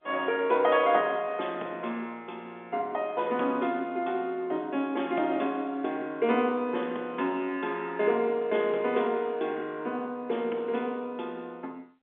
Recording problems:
phone line; 190 Hz to 3.6 kHz, G.711

